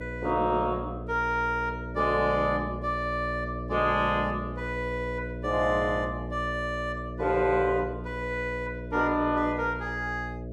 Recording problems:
electrical hum; 60 Hz, harmonics up to 660 Hz, SNR 9 dB

